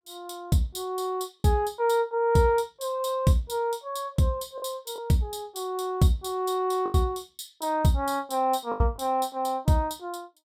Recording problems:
lost packets; 3% of the sound replaced, filled with the last packet

